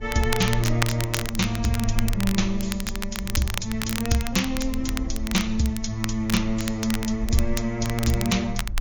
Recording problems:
codec artefacts; MP3, log-spectral distance 2 dB, nothing above 18.9 kHz
rumble; below 50 Hz, strongest tone 18 Hz, SNR 10 dB
crackling; vinyl, SNR 8 dB

